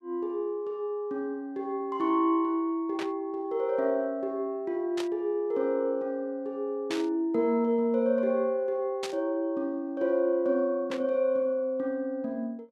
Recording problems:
static burst; 5 times, first at 3 s; peak -3 dB vs average level

